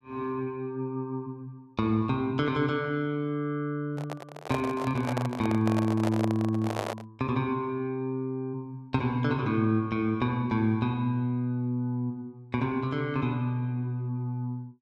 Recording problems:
handling noise; from 4 to 7 s; peak +2 dB vs average level

